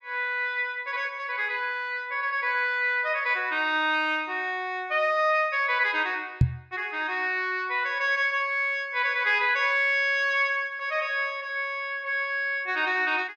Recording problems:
microphone bump; at 6.5 s; peak +8 dB vs average level

